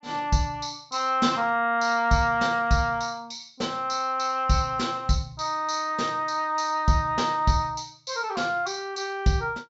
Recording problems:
treble cut off; nothing above 8 kHz

